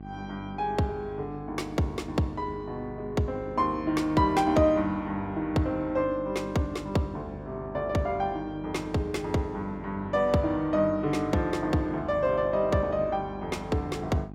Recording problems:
hum; 50 Hz, harmonics up to 850 Hz, SNR 14 dB

